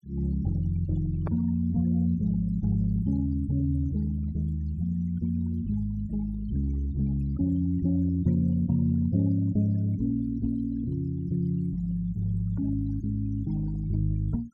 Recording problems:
noise reduction artefacts; signal-to-artefact ratio 25 dB

